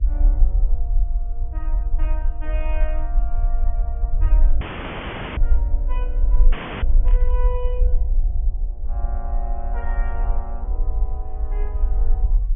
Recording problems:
low-pass filter; nothing above 3.4 kHz
hum; 60 Hz, harmonics up to 660 Hz, SNR 22 dB
low-frequency rumble; below 44 Hz, SNR -14 dB
audio cutting out; at 4.5 s for 1 s and at 6.5 s
burst of static; at 7 s; peak -5 dB vs average level

